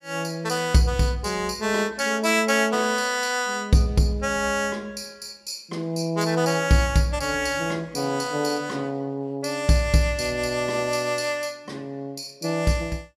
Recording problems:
none

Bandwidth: 15 kHz